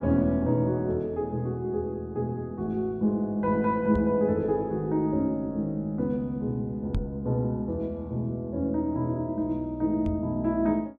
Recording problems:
microphone bump; at 4 s, at 7 s and at 10 s; peak +1 dB vs average level

